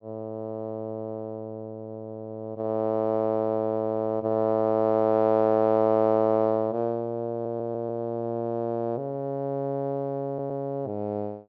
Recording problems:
audio stuttering; at 7.5 s and at 10 s

